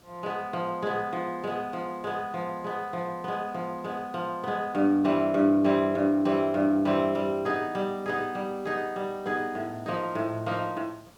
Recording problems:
hiss; SNR 28 dB

